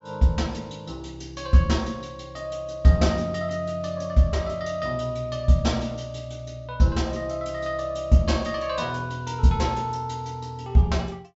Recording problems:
low-pass filter; nothing above 8 kHz

